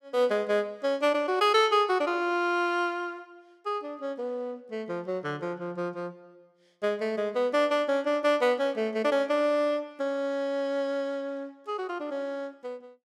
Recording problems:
none

